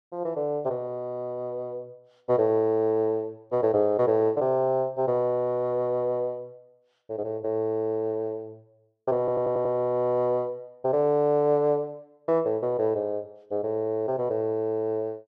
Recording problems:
stutter; at 9 s

